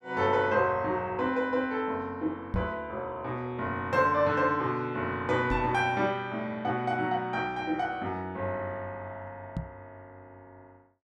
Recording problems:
microphone bump; at 2.5 s, at 5.5 s and at 9.5 s; peak +1 dB vs average level

